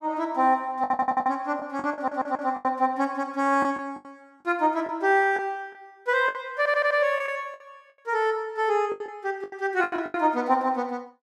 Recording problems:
packet loss; 10% of the sound replaced, filled with the last packet
audio stuttering; at 1 s, at 2 s and at 6.5 s

